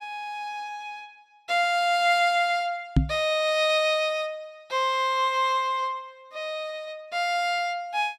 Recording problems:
microphone thump; at 3 s; peak +8 dB vs average level

